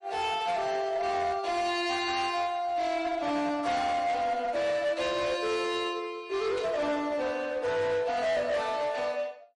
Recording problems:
lossy codec; MP3, log-spectral distance 2 dB, nothing above 10.4 kHz
distorted audio; hard clipping, uneven, signal-to-distortion ratio 11 dB
static burst; at 4 s and at 6.5 s; peak -10 dB vs average level

